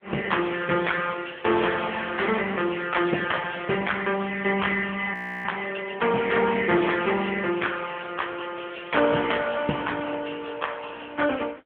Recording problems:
telephone audio; 240 Hz to 3.3 kHz, AMR-NB
crackle; from 0.5 to 3 s and from 8.5 to 10 s; loose cable, SNR 22 dB
frozen audio; at 5 s

